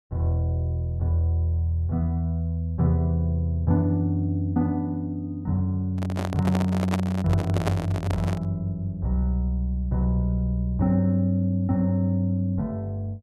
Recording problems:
microphone handling noise; from 6 to 8.5 s; peak +2 dB vs average level

